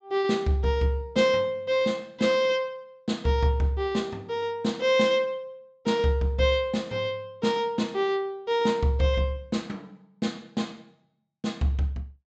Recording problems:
low-pass filter; nothing above 8 kHz

